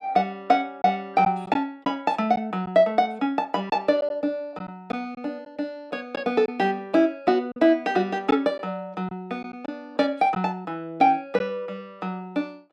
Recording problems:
lost packets; 3% of the sound replaced, filled with silence

